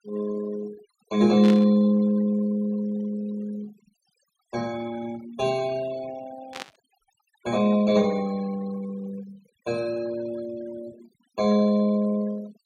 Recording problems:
denoising artefacts; signal-to-artefact ratio 19 dB
burst of static; at 1.5 s and at 6.5 s; peak -5 dB vs average level

